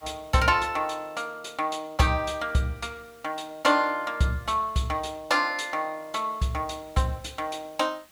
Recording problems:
background hiss; slope -1 dB per octave, SNR 28 dB

